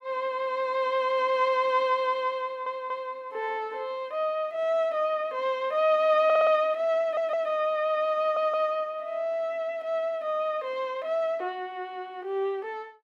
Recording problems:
stutter; 4 times, first at 2.5 s

